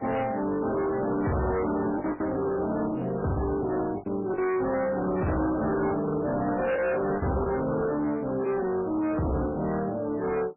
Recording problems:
lossy compression; MP3, then AAC, log-spectral distance 4 dB, nothing above 2.8 kHz
distortion; hard clipping, signal-to-distortion ratio 6 dB
lost packets; 4% of the sound replaced, filled with the last packet

